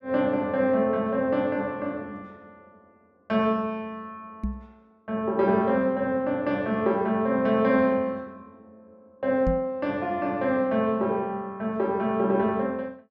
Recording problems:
microphone thump; at 4.5 s and at 9.5 s; peak +1 dB vs average level

